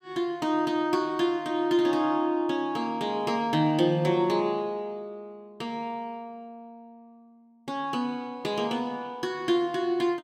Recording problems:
none

